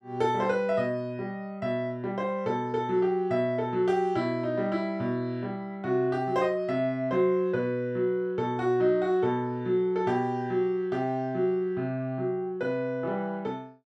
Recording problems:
none

